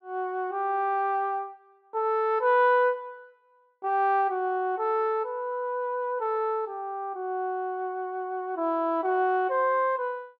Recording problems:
none

